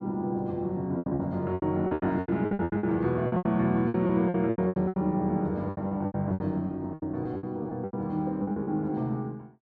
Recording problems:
lost packets; 19% of the sound replaced, filled with repeated pitch periods

